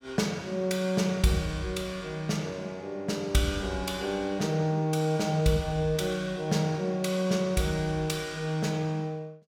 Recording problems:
none

